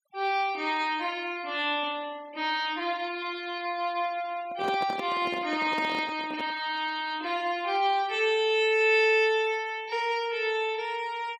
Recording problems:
noise reduction artefacts; signal-to-artefact ratio 23 dB
handling noise; from 4.5 to 6.5 s; peak -4 dB vs average level

